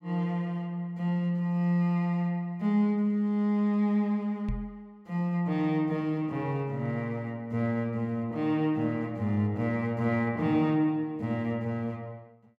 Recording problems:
microphone bump; at 4.5 s; peak -2 dB vs average level

